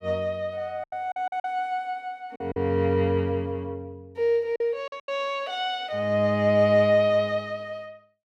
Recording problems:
lost packets; 6% of the sound replaced, filled with silence

